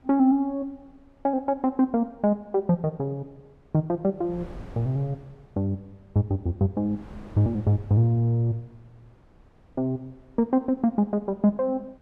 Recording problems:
wind on the microphone; below 390 Hz, SNR 25 dB

